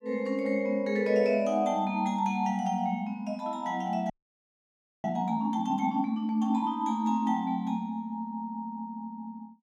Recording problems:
audio freezing; at 4 s for 1 s

